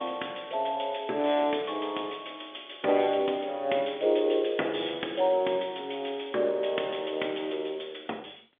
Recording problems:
phone line; 240 Hz to 3.6 kHz, G.711

